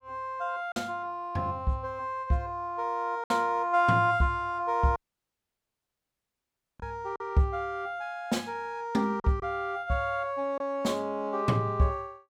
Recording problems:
lost packets; 2% of the sound replaced, filled with silence
audio cutting out; at 5 s for 2 s

